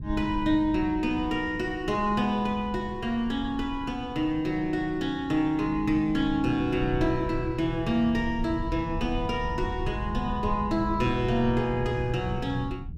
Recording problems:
rumble; below 110 Hz, SNR 11 dB

